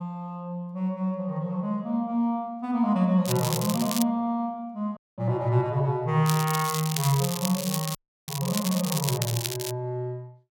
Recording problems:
crackling; at 3.5 s and from 6.5 to 9.5 s; loose cable, SNR 5 dB
audio cutting out; at 5 s and at 8 s

